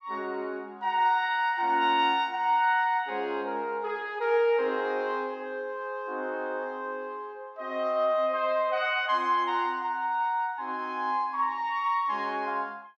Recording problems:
none

